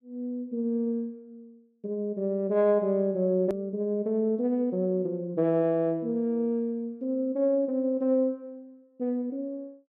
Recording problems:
hard cut with a click; at 3.5 s

